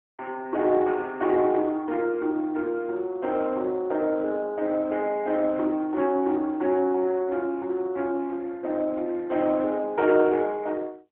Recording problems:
telephone audio; 220 Hz to 3.3 kHz, AMR-NB

